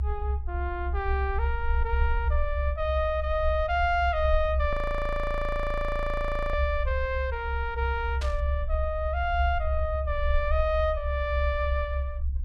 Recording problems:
low-frequency rumble; below 68 Hz, strongest tone 66 Hz, SNR 1 dB
frozen audio; at 4.5 s for 2 s
static burst; at 8 s; peak -5 dB vs average level

